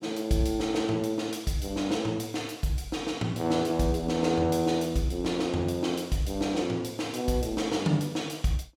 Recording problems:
none

